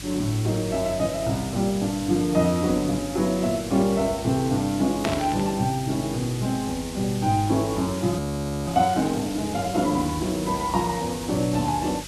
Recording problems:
lossy codec; Vorbis, log-spectral distance 4 dB, nothing above 13.1 kHz
hum; 50 Hz, harmonics up to 450 Hz, SNR 17 dB
background hiss; slope +2 dB per octave, SNR 13 dB
burst of static; at 5 s; peak -1 dB vs average level
frozen audio; at 8 s

